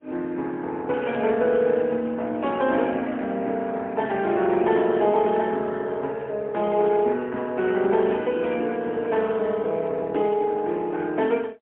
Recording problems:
phone line; 190 Hz to 3.3 kHz, AMR-NB, then MP3

